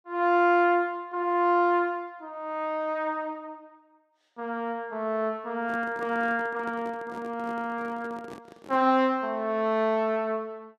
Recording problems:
handling noise; from 5.5 to 9 s; peak -12 dB vs average level

